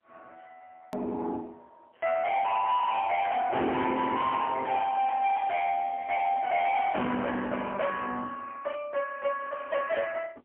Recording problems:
phone line; 260 Hz to 3.2 kHz, AMR-NB, then MP3
distortion; soft clipping, signal-to-distortion ratio 6 dB
edit click; at 1 s

